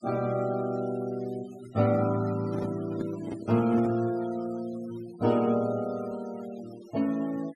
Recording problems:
noise reduction artefacts; signal-to-artefact ratio 21 dB
handling noise; from 2.5 to 4 s; peak -3 dB vs average level

